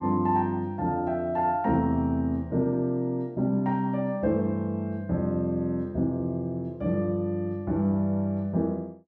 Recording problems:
none

